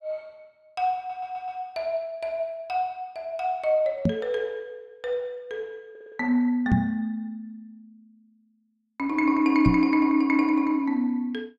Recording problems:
stutter; at 1 s and at 6 s
microphone thump; at 4 s, at 6.5 s and at 9.5 s; peak +7 dB vs average level

